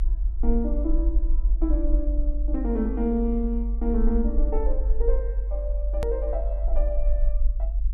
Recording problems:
low-frequency rumble; below 48 Hz, SNR -3 dB
hard cut with a click; at 6 s

